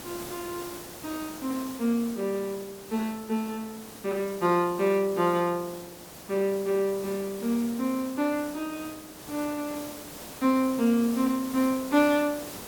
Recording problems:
background hiss; slope -4 dB per octave, SNR 14 dB

